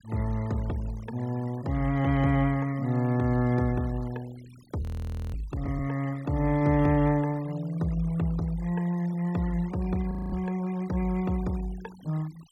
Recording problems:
denoising artefacts; signal-to-artefact ratio 22 dB
audio freezing; at 5 s for 0.5 s and at 10 s

